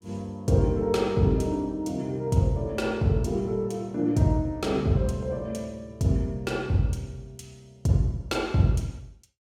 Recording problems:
none

